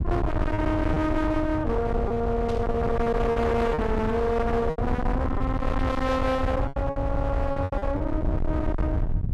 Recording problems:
distortion; hard clipping, signal-to-distortion ratio 7 dB
rumble; below 190 Hz, SNR 3 dB
packet loss; 8% of the sound replaced, filled with repeated pitch periods
static burst; at 2.5 s; peak -12 dB vs average level

